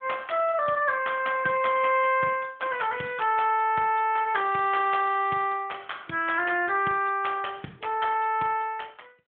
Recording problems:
phone line; 220 Hz to 3.4 kHz, AMR-NB

